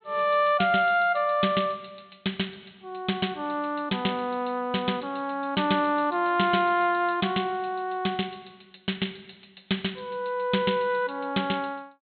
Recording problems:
low-pass filter; nothing above 4.2 kHz

